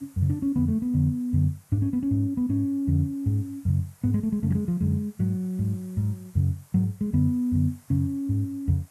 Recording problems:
background hiss; SNR 30 dB

